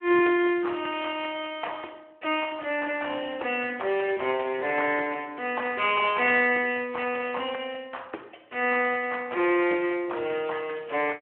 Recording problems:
telephone audio; 280 Hz to 3.1 kHz, Speex

